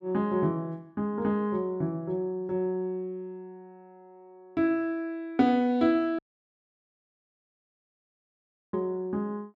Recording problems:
audio cutting out; at 6 s for 2.5 s

